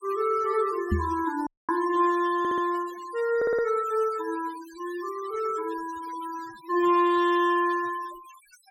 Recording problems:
noise reduction artefacts; signal-to-artefact ratio 20 dB
microphone thump; at 1 s; peak +4 dB vs average level
audio cutting out; at 1.5 s
stutter; at 2.5 s and at 3.5 s

